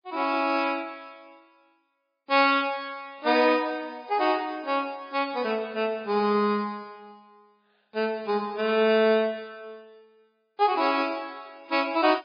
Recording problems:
lossy codec; MP3, log-spectral distance 3 dB, nothing above 5 kHz

